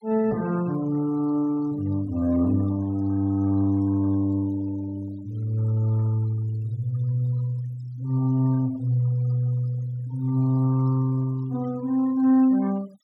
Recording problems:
noise reduction artefacts; signal-to-artefact ratio 25 dB

